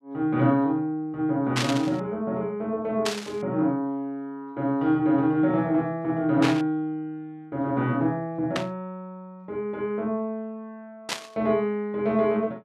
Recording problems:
burst of static; 5 times, first at 1.5 s; peak +3 dB vs average level

